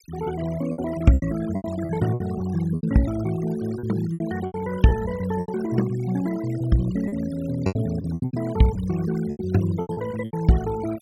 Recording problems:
noise reduction artefacts; signal-to-artefact ratio 16 dB
packet loss; 12% of the sound replaced, filled with repeated pitch periods

